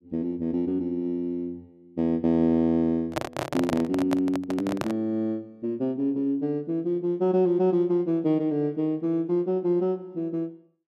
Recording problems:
handling noise; from 3 to 5 s; peak +2 dB vs average level

